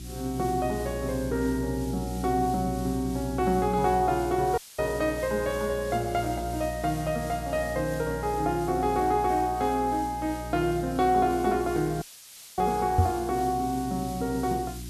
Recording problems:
mains hum; 60 Hz, harmonics up to 360 Hz, SNR 11 dB
background hiss; slope +3 dB per octave, SNR 17 dB
dropout; at 4.5 s and at 12 s for 0.5 s
microphone bump; at 13 s; peak +8 dB vs average level

